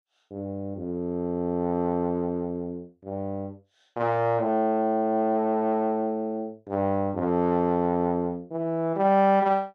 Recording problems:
none

